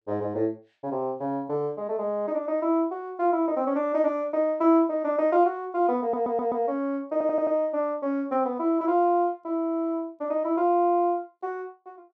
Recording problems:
stutter; at 6 s and at 7 s

